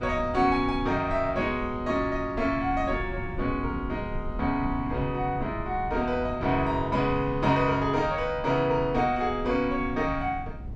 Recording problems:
low-frequency rumble; below 130 Hz, SNR 12 dB

